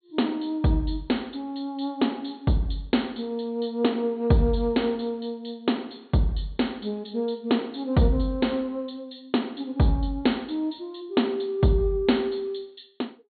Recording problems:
treble cut off; nothing above 4.4 kHz

